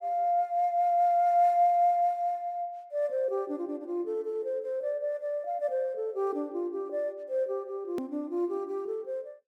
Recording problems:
edit click; at 8 s

